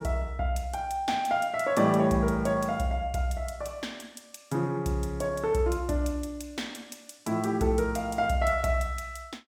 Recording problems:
none

